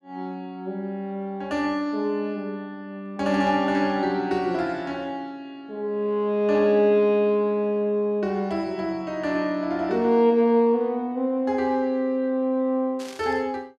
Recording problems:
static burst; at 13 s; peak -13 dB vs average level

